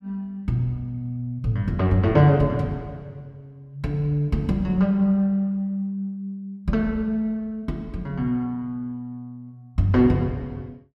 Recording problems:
none

